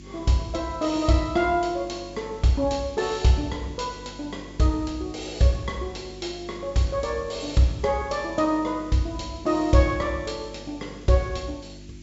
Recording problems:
treble missing; nothing above 8 kHz
hum; 50 Hz, harmonics up to 350 Hz, SNR 19 dB
hiss; SNR 27 dB

